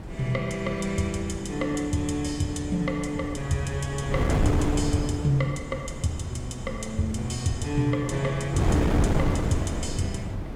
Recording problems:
wind on the microphone; below 320 Hz, SNR 3 dB

